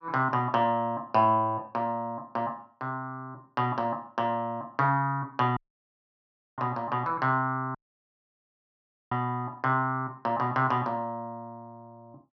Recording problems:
low-pass filter; nothing above 6.2 kHz
audio cutting out; at 5.5 s for 1 s and at 8 s for 1.5 s

